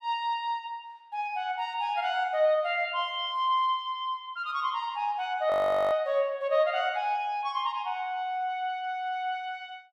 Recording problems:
audio freezing; at 5.5 s

